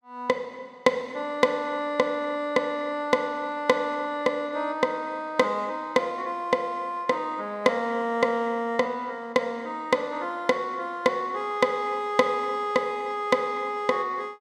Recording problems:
none

